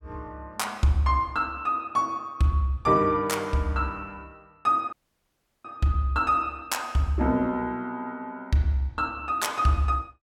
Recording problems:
dropout; at 5 s for 0.5 s

